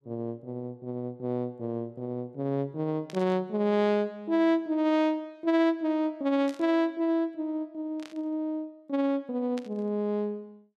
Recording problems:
burst of static; 4 times, first at 3 s; peak -11 dB vs average level

